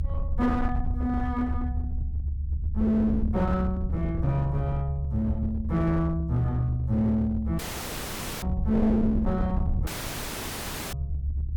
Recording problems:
distortion; hard clipping, uneven, signal-to-distortion ratio 10 dB
low-frequency rumble; below 82 Hz, SNR 4 dB
dropout; at 7.5 s for 1 s and at 10 s for 1 s

